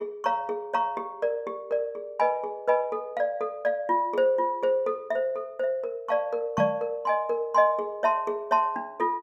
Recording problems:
microphone bump; at 6.5 s; peak +1 dB vs average level

